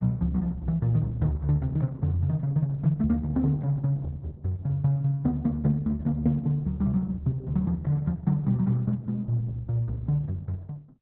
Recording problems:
codec artefacts; Opus, log-spectral distance 2 dB, nothing above 3.9 kHz

